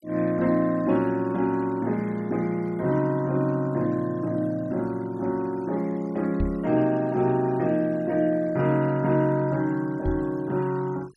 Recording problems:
denoising artefacts; signal-to-artefact ratio 25 dB
knock on the microphone; at 6.5 s and at 10 s; peak -1 dB vs average level

